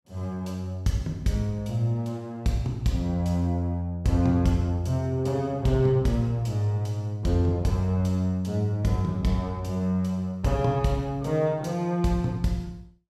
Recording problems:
none

